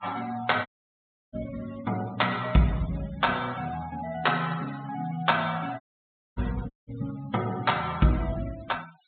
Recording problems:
treble cut off; nothing above 4 kHz
denoising artefacts; signal-to-artefact ratio 17 dB
audio cutting out; at 0.5 s for 0.5 s, at 6 s for 0.5 s and at 6.5 s

